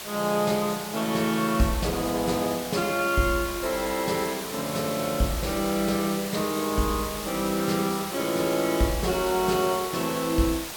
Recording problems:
hiss; slope -1 dB per octave, SNR 8 dB

